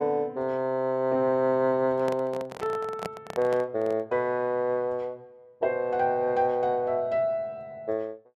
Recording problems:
handling noise; from 2 to 4 s; peak -3 dB vs average level

